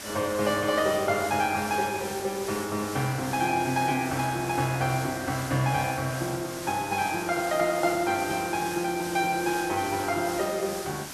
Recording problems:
background hiss; slope -1 dB per octave, SNR 10 dB

